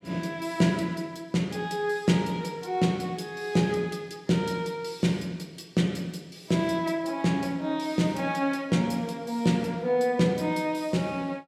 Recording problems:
none

